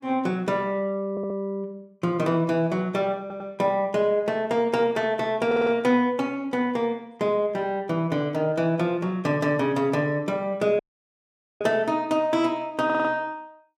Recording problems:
stutter; 4 times, first at 1 s
audio cutting out; at 11 s for 1 s

